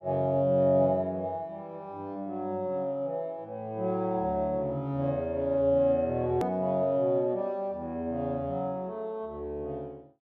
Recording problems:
click at an edit; at 6.5 s

